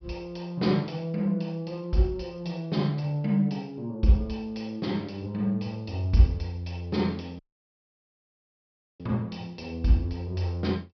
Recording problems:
treble cut off; nothing above 5.5 kHz
audio cutting out; at 7.5 s for 1.5 s

